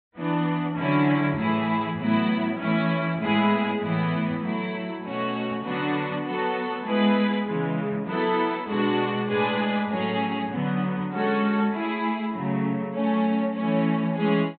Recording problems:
treble missing; nothing above 4 kHz

